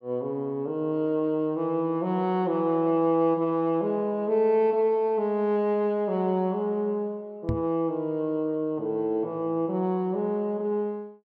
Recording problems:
knock on the microphone; at 7.5 s; peak +1 dB vs average level

